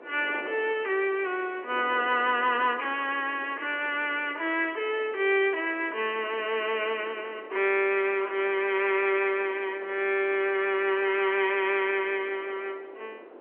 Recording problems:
telephone audio; 300 Hz to 3.2 kHz, G.711
wind on the microphone; below 690 Hz, SNR 19 dB

